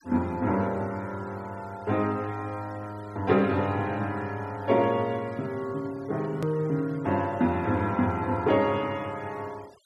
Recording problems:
noise reduction artefacts; signal-to-artefact ratio 24 dB
hard cut with a click; at 6.5 s

